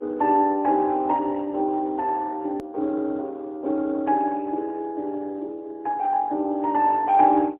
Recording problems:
telephone audio; 260 Hz to 3.2 kHz, AMR-NB, then MP3
click at an edit; at 2.5 s

